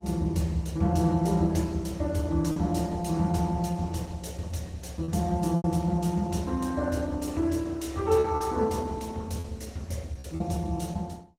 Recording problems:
codec artefacts; Opus, log-spectral distance 3 dB, nothing above 16 kHz
lost packets; 3% of the sound replaced, filled with repeated pitch periods

